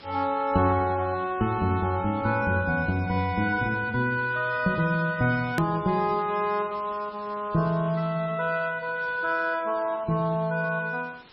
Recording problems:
lossy codec; MP3, log-spectral distance 5 dB, nothing above 15.1 kHz
background hiss; SNR 23 dB
edit click; at 5.5 s

